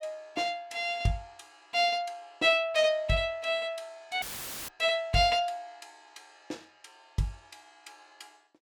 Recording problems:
audio cutting out; at 4 s; filled with static

